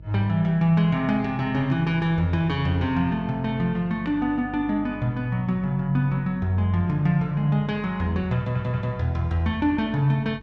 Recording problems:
mains hum; 50 Hz, harmonics up to 500 Hz, SNR 20 dB
audio stuttering; at 8.5 s

